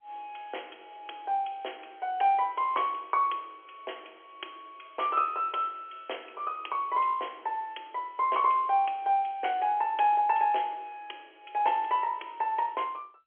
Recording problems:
telephone audio; 300 Hz to 3.3 kHz, G.711

